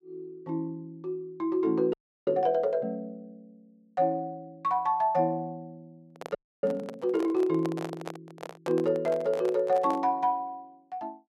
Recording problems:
frozen audio; at 2 s and at 6.5 s
microphone handling noise; from 6 to 10 s; peak -3 dB vs average level

